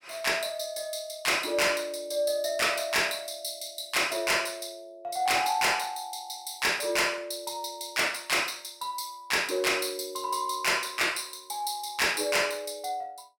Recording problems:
distorted audio; hard clipping, signal-to-distortion ratio 10 dB

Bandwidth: 17 kHz